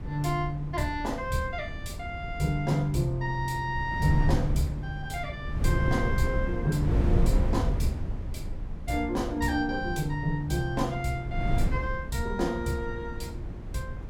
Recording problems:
wind on the microphone; below 120 Hz, SNR 3 dB

